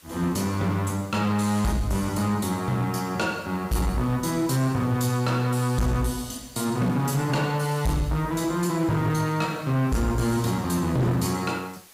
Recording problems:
distortion; hard clipping, signal-to-distortion ratio 11 dB
hiss; slope 0 dB per octave, SNR 24 dB

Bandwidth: 15.5 kHz